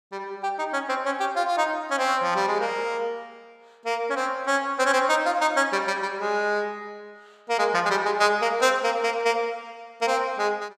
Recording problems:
none

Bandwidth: 15.5 kHz